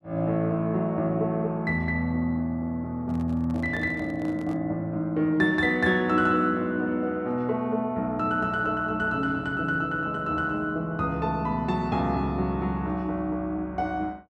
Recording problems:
microphone handling noise; from 3 to 4.5 s; peak -11 dB vs average level

